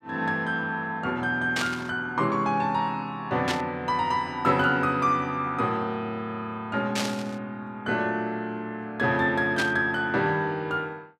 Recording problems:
burst of static; 4 times, first at 1.5 s; peak +2 dB vs average level

